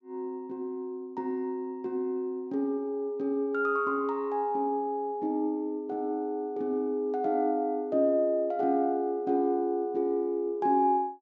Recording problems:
treble cut off; nothing above 8 kHz

